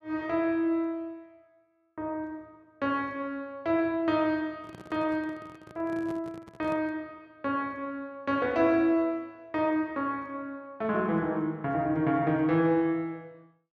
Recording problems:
microphone handling noise; from 4.5 to 7 s; peak -10 dB vs average level

